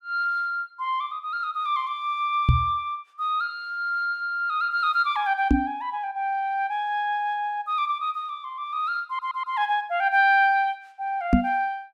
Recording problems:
microphone bump; at 2.5 s, at 5.5 s and at 11 s; peak +10 dB vs average level
stutter; at 9 s

